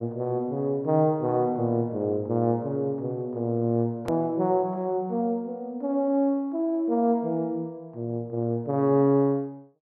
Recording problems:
edit click; at 4 s

